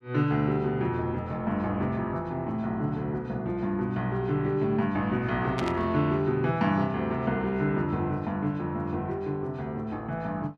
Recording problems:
burst of static; at 5.5 s; peak -2 dB vs average level

